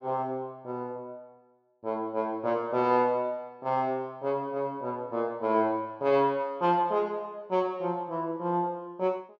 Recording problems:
none

